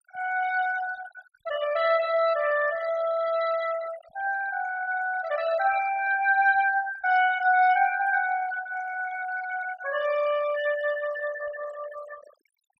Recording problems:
noise reduction artefacts; signal-to-artefact ratio 15 dB

